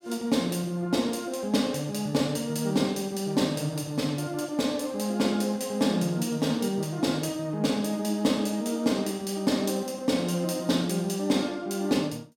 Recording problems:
none

